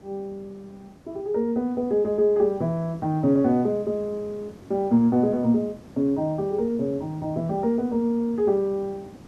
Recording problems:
hiss; SNR 22 dB

